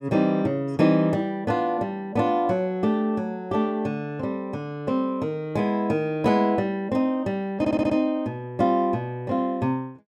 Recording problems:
stutter; at 7.5 s

